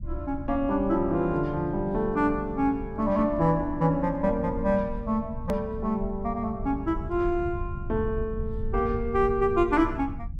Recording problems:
low-frequency rumble; below 98 Hz, SNR 11 dB
hard cut with a click; at 5.5 s

